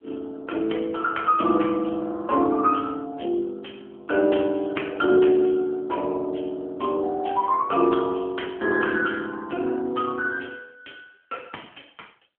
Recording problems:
telephone audio; 260 Hz to 3.3 kHz, AMR-NB

